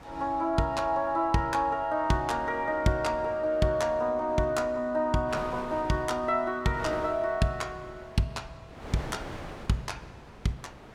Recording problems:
wind noise; below 1.2 kHz, SNR 17 dB

